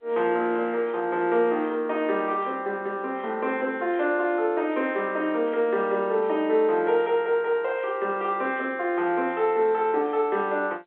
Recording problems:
telephone audio; 280 Hz to 3.8 kHz, G.711

